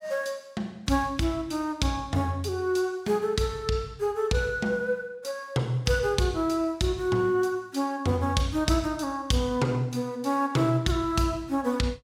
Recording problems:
none

